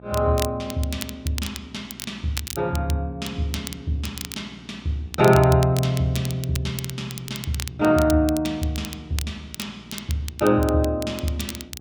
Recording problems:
electrical hum; 60 Hz, harmonics up to 840 Hz, SNR 23 dB
crackle; vinyl, SNR 12 dB

